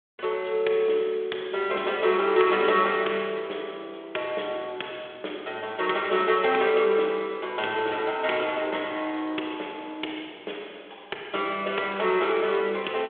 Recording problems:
phone line; 320 Hz to 3.5 kHz, G.726

